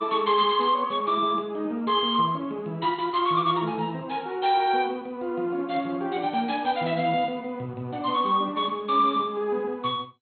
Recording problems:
lossy codec; MP2, log-spectral distance 2 dB, nothing above 3.6 kHz

